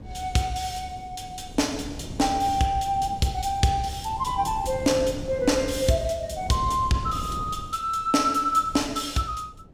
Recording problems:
wind noise; below 240 Hz, SNR 14 dB

